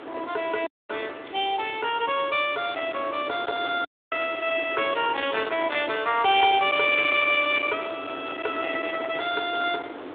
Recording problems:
phone line; 260 Hz to 3.7 kHz, Speex
distorted audio; hard clipping, signal-to-distortion ratio 14 dB
background hiss; SNR 27 dB
wind on the microphone; below 2.3 kHz, SNR 12 dB
audio cutting out; at 0.5 s and at 4 s

